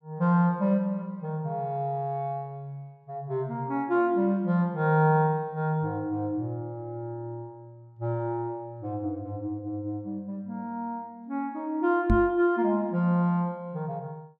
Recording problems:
knock on the microphone; at 12 s; peak +8 dB vs average level

